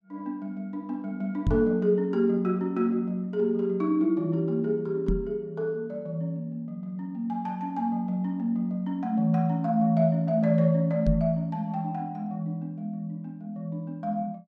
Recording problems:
knock on the microphone; at 1.5 s, at 5 s and at 11 s; peak +5 dB vs average level

